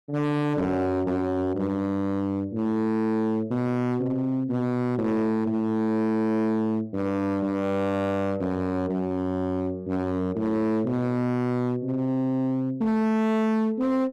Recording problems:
distortion; hard clipping, signal-to-distortion ratio 7 dB

